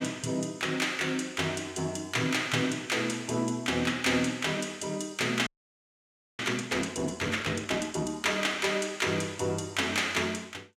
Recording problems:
audio freezing; at 5.5 s for 1 s

